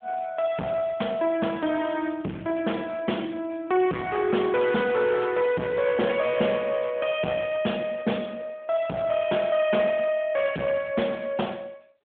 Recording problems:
telephone audio; 150 Hz to 3.4 kHz, AMR-NB
distortion; hard clipping, uneven, signal-to-distortion ratio 7 dB

